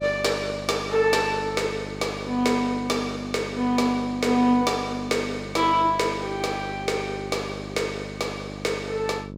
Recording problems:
hum; 50 Hz, harmonics up to 650 Hz, SNR 12 dB

